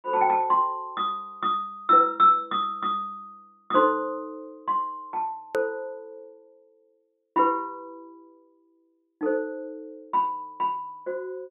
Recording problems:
treble cut off; nothing above 4 kHz
hard cut with a click; at 5.5 s

